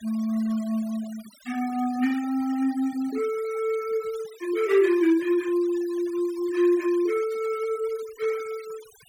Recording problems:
denoising artefacts; signal-to-artefact ratio 20 dB

